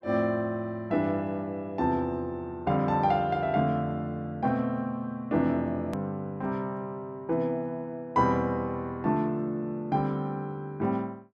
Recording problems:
edit click; at 6 s

